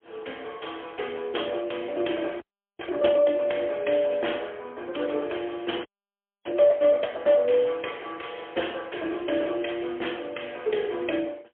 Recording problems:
telephone audio; 260 Hz to 3.4 kHz, AMR-NB, then MP3
frozen audio; at 2.5 s and at 6 s for 0.5 s

